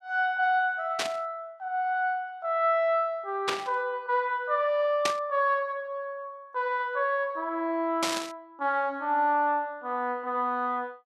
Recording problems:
burst of static; 4 times, first at 1 s; peak +4 dB vs average level

